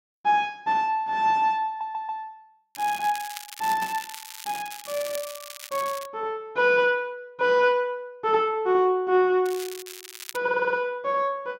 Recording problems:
audio stuttering; at 1.5 s and at 10 s
crackle; from 2.5 to 6 s and at 9.5 s; loose cable, SNR 14 dB

